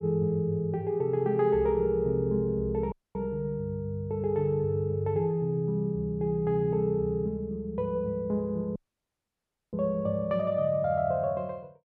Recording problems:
audio cutting out; at 3 s and at 9 s for 1 s

